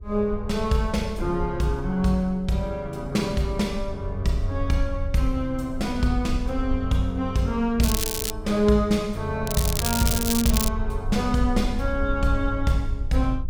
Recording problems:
low-frequency rumble; below 64 Hz, SNR 9 dB
crackling; at 8 s and from 9.5 to 11 s; loose cable, SNR 2 dB

